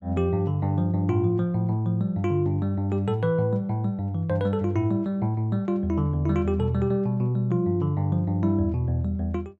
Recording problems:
none

